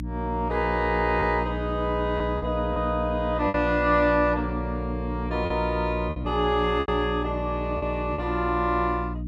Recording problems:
hum; 60 Hz, harmonics up to 300 Hz, SNR 6 dB
packet loss; 5% of the sound replaced, filled with repeated pitch periods

